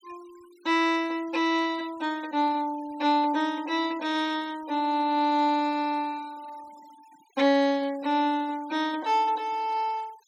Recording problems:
noise reduction artefacts; signal-to-artefact ratio 25 dB

